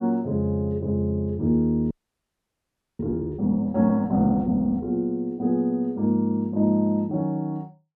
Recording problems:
audio freezing; at 2 s for 1 s

